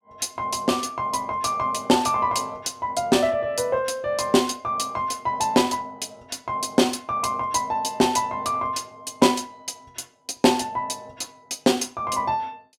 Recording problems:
none

